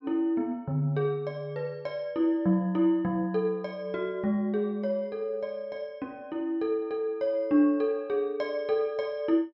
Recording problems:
none

